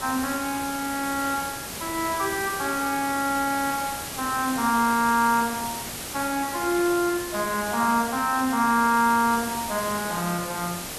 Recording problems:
hiss; slope -2 dB per octave, SNR 8 dB

